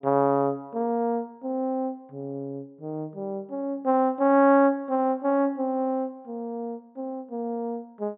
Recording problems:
low-pass filter; nothing above 4 kHz

